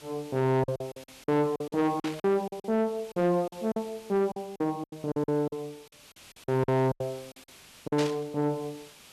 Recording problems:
distorted audio; soft clipping, signal-to-distortion ratio 11 dB
background hiss; slope 0 dB per octave, SNR 22 dB
lost packets; 14% of the sound replaced, filled with silence
static burst; at 2 s and at 8 s; peak -2 dB vs average level

